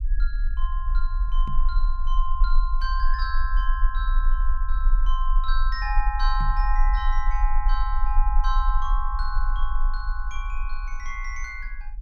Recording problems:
rumble; below 38 Hz, strongest tone 18 Hz, SNR -5 dB
microphone thump; at 1.5 s and at 6.5 s; peak +3 dB vs average level

